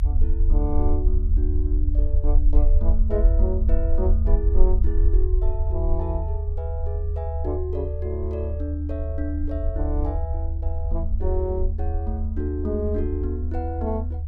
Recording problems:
rumble; below 76 Hz, SNR -7 dB

